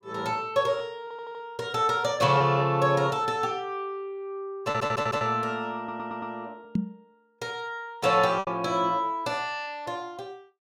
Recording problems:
packet loss; 3% of the sound replaced, filled with repeated pitch periods
audio stuttering; at 1 s, at 4.5 s and at 6 s
knock on the microphone; at 7 s; peak +4 dB vs average level

